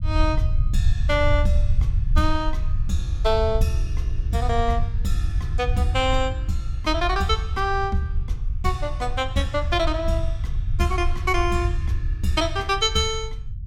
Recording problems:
low-frequency rumble; below 78 Hz, SNR 2 dB

